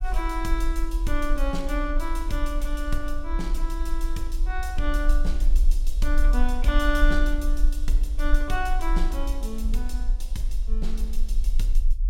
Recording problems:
low-frequency rumble; below 40 Hz, strongest tone 22 Hz, SNR -4 dB

